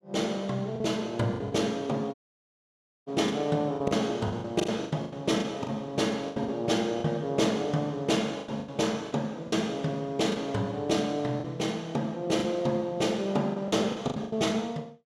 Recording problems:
packet loss; 10% of the sound replaced, filled with the last packet
audio cutting out; at 2 s for 1 s

